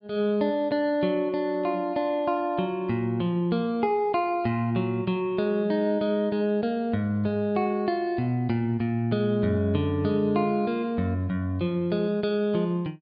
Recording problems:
low-pass filter; nothing above 5.1 kHz

